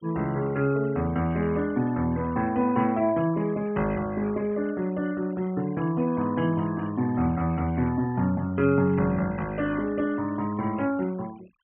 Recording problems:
low-pass filter; nothing above 3.2 kHz
noise reduction artefacts; signal-to-artefact ratio 21 dB

